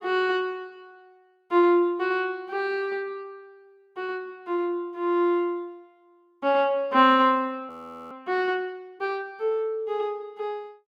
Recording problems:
frozen audio; at 7.5 s

